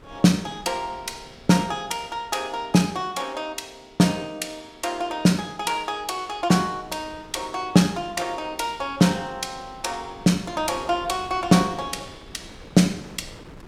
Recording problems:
wind noise; below 620 Hz, SNR 22 dB

